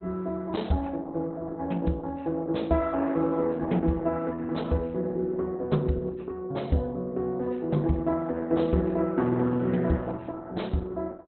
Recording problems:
codec artefacts; Opus, log-spectral distance 3 dB, nothing above 4.1 kHz

